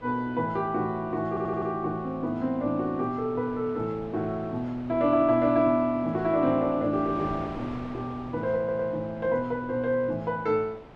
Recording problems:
wind on the microphone; below 960 Hz, SNR 18 dB
stutter; at 1.5 s and at 8.5 s

